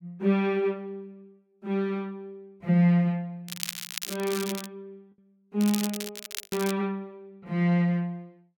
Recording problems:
lost packets; 0.9% of the sound replaced, filled with the last packet
crackle; from 3.5 to 4.5 s and from 5.5 to 6.5 s; loose cable, SNR 8 dB

